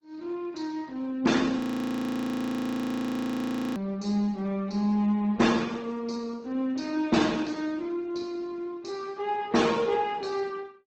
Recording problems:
lossy compression; Speex, then Opus, log-spectral distance 3 dB, nothing above 18.9 kHz
frozen audio; at 1.5 s for 2 s

